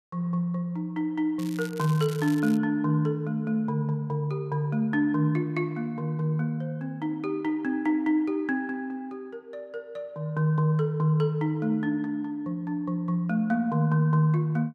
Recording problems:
crackle; from 1.5 to 2.5 s; loose cable, SNR 18 dB

